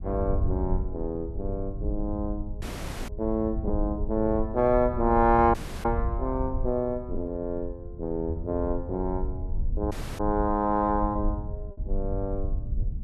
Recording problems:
low-frequency rumble; below 74 Hz, SNR 6 dB
lost packets; 1.5% of the sound replaced, filled with repeated pitch periods
dropout; at 2.5 s, at 5.5 s and at 10 s

